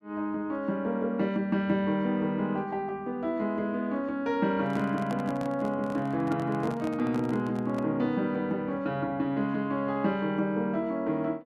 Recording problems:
handling noise; from 4.5 to 8 s; peak -5 dB vs average level

